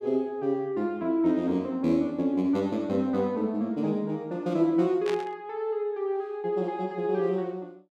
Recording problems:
burst of static; at 5 s; peak -4 dB vs average level

